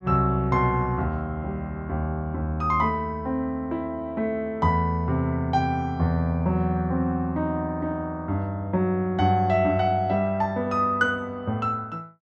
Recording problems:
none

